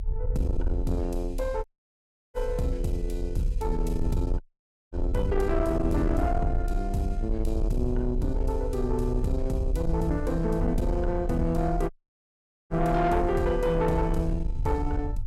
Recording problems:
distorted audio; soft clipping, signal-to-distortion ratio 12 dB
rumble; below 68 Hz, strongest tone 36 Hz, SNR 3 dB
dropout; at 1.5 s for 0.5 s, at 4.5 s for 0.5 s and at 12 s for 1 s

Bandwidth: 16 kHz